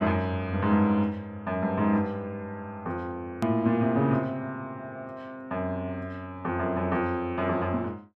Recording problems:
hard cut with a click; at 3.5 s

